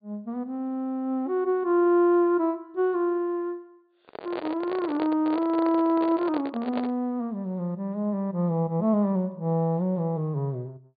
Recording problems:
treble missing; nothing above 4.7 kHz
handling noise; from 4 to 7 s; peak -4 dB vs average level

